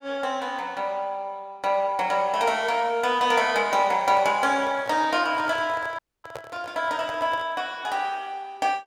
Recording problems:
handling noise; from 4 to 7.5 s; peak -7 dB vs average level
dropout; at 6 s

